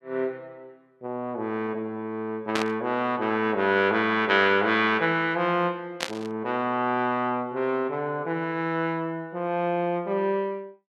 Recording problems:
static burst; at 2.5 s and at 6 s; peak +2 dB vs average level

